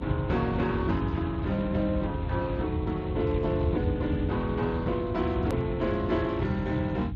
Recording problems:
codec artefacts; Speex, log-spectral distance 2 dB, nothing above 13.1 kHz
hum; 60 Hz, harmonics up to 300 Hz, SNR 15 dB
low-frequency rumble; below 110 Hz, SNR 5 dB
click at an edit; at 5.5 s

